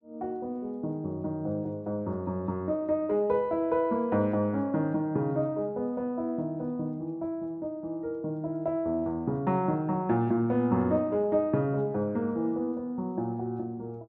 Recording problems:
low-pass filter; nothing above 7.3 kHz

